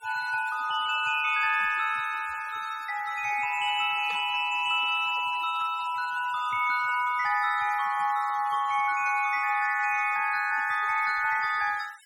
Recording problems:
noise reduction artefacts; signal-to-artefact ratio 20 dB
static burst; at 4 s; peak -14 dB vs average level

